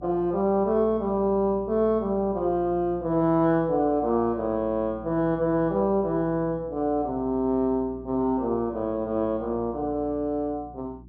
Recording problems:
electrical hum; 60 Hz, harmonics up to 360 Hz, SNR 20 dB

